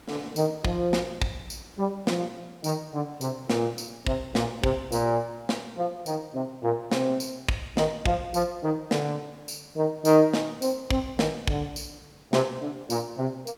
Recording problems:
hiss; slope -5 dB per octave, SNR 27 dB

